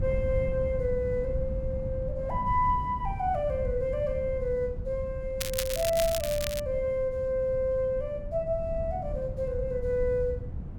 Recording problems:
wind noise; below 120 Hz, SNR 7 dB
crackling; from 5.5 to 6.5 s; loose cable, SNR 5 dB

